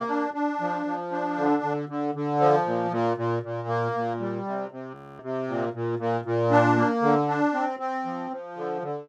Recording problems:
audio freezing; at 5 s

